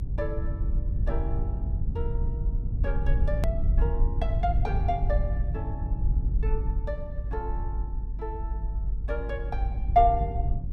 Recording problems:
rumble; below 74 Hz, SNR -3 dB
hard cut with a click; at 3.5 s

